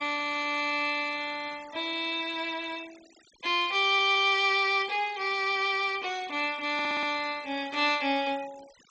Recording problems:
treble cut off; nothing above 8 kHz
noise reduction artefacts; signal-to-artefact ratio 21 dB
stutter; at 4 s and at 6.5 s
burst of static; at 7.5 s; peak -13 dB vs average level

